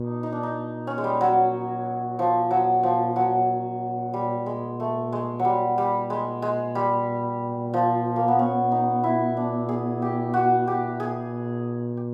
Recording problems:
hum; 60 Hz, harmonics up to 1.1 kHz, SNR 7 dB

